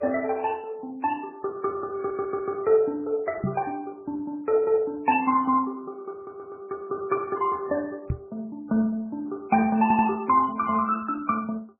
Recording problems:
codec artefacts; MP2, then MP3, log-spectral distance 2 dB, nothing above 2.7 kHz
stutter; at 2 s, at 6.5 s and at 10 s
microphone thump; at 3.5 s and at 8 s; peak +3 dB vs average level

